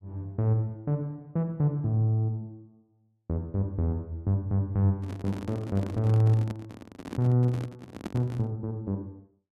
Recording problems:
handling noise; from 5 to 8.5 s; peak -3 dB vs average level

